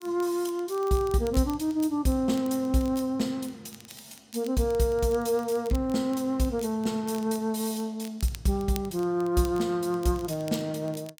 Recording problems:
crackling; vinyl, SNR 21 dB

